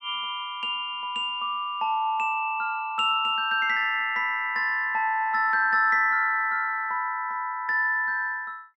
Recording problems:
none

